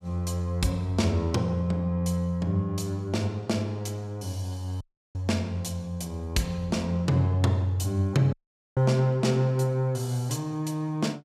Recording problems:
audio cutting out; at 5 s and at 8.5 s

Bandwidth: 15 kHz